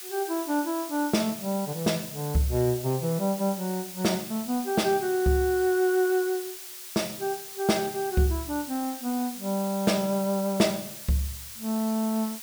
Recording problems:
background hiss; slope +3 dB per octave, SNR 10 dB

